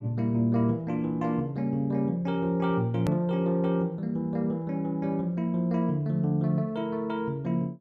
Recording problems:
edit click; at 3 s

